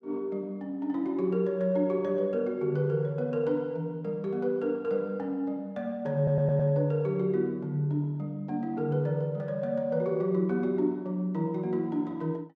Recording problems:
audio stuttering; at 6 s

